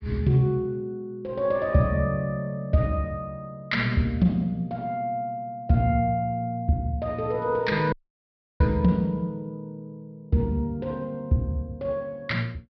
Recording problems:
low-pass filter; nothing above 5.5 kHz
dropout; at 8 s for 0.5 s

